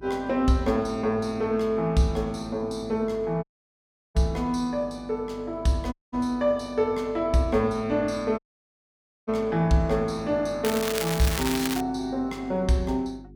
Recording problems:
hum; 50 Hz, harmonics up to 400 Hz, SNR 21 dB
audio cutting out; at 3.5 s for 0.5 s, at 6 s and at 8.5 s for 1 s
crackling; from 11 to 12 s; loose cable, SNR 5 dB

